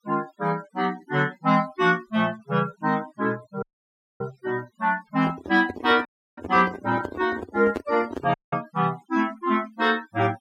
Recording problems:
denoising artefacts; signal-to-artefact ratio 22 dB
audio cutting out; at 3.5 s for 0.5 s, at 6 s and at 8.5 s
microphone handling noise; from 5 to 8.5 s; peak -1 dB vs average level

